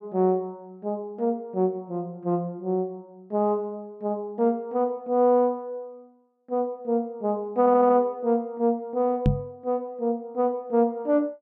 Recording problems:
stutter; at 7.5 s
microphone thump; at 9.5 s; peak +7 dB vs average level

